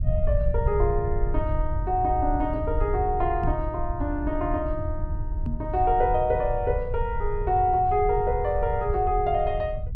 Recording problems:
low-frequency rumble; below 80 Hz, SNR 5 dB
microphone thump; at 3.5 s and at 5.5 s; peak -1 dB vs average level

